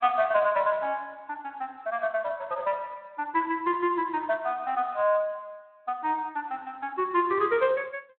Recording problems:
telephone audio; 300 Hz to 3.9 kHz, Speex

